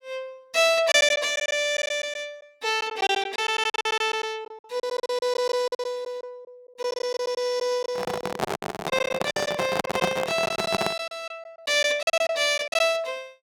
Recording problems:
packet loss; 13% of the sound replaced, filled with silence
microphone handling noise; from 8 to 11 s; peak +4 dB vs average level

